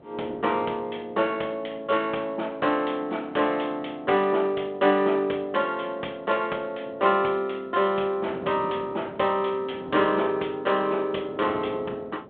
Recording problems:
telephone audio; 260 Hz to 3.5 kHz, G.726
wind on the microphone; below 530 Hz, SNR 19 dB

